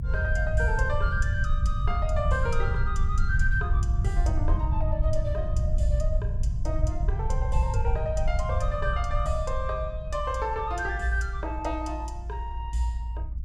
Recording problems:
rumble; below 82 Hz, SNR -3 dB

